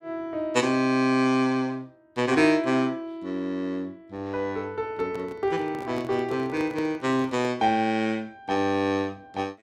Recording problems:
microphone handling noise; from 5 to 7.5 s; peak -7 dB vs average level

